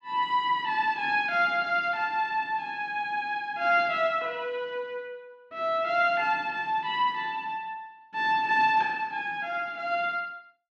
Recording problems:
none

